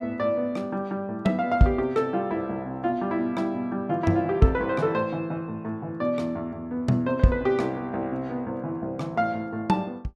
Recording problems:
none

